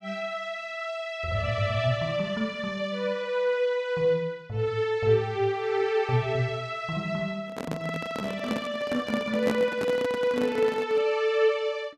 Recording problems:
handling noise; from 7.5 to 11 s; peak +2 dB vs average level

